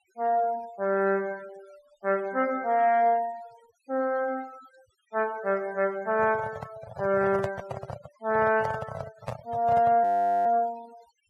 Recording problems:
noise reduction artefacts; signal-to-artefact ratio 22 dB
handling noise; from 6 to 10 s; peak -2 dB vs average level
audio freezing; at 10 s

